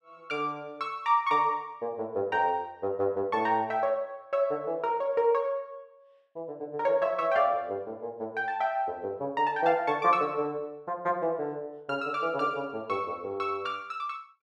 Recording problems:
none

